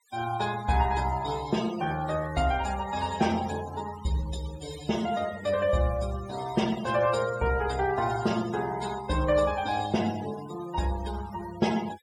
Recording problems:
noise reduction artefacts; signal-to-artefact ratio 14 dB

